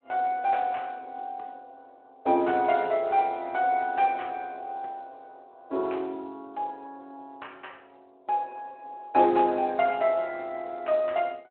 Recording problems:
phone line; 280 Hz to 3.1 kHz, Speex

